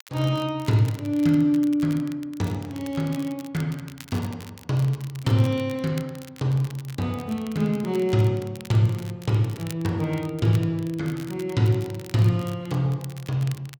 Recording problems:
crackle; vinyl, SNR 21 dB

